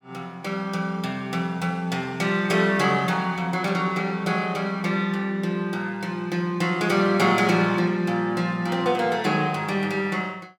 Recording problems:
none

